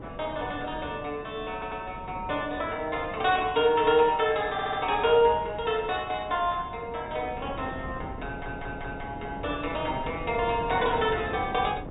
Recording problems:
treble missing; nothing above 4 kHz
wind noise; below 450 Hz, SNR 13 dB
stutter; at 1.5 s, at 4.5 s and at 8.5 s

